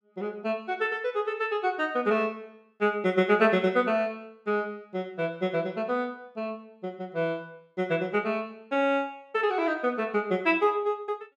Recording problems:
none

